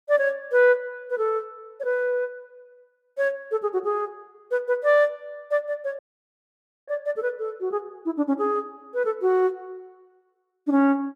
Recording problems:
audio cutting out; at 6 s for 1 s

